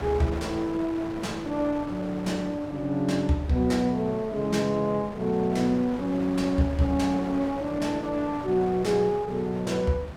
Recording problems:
electrical hum; 50 Hz, harmonics up to 950 Hz, SNR 22 dB
wind on the microphone; below 1.3 kHz, SNR 14 dB

